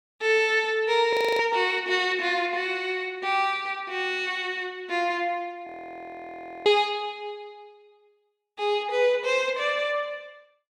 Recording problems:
audio freezing; at 1 s and at 5.5 s for 1 s

